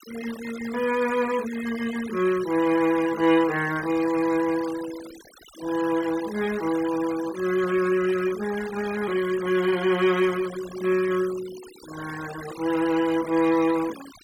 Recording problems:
noise reduction artefacts; signal-to-artefact ratio 16 dB

